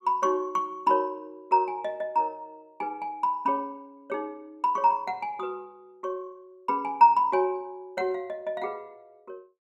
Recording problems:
none

